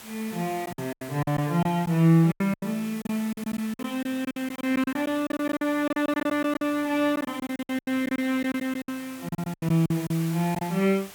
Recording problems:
background hiss; slope -1 dB per octave, SNR 17 dB
packet loss; 16% of the sound replaced, filled with silence

